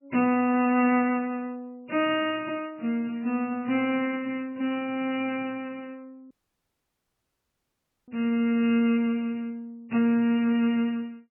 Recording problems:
lossy codec; MP3, log-spectral distance 3 dB, nothing above 2.4 kHz
audio cutting out; at 6.5 s for 2 s

